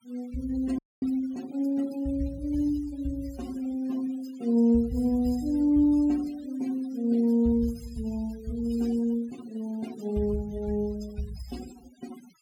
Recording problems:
denoising artefacts; signal-to-artefact ratio 21 dB
frozen audio; at 1 s

